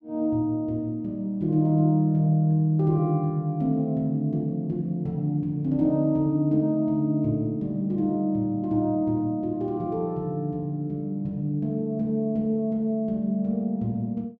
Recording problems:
none

